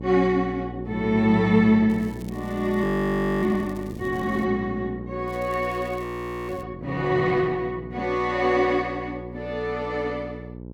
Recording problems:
electrical hum; 60 Hz, harmonics up to 600 Hz, SNR 12 dB
crackling; from 2 to 4.5 s and from 5.5 to 6.5 s; loose cable, SNR 27 dB
frozen audio; at 3 s for 0.5 s and at 6 s

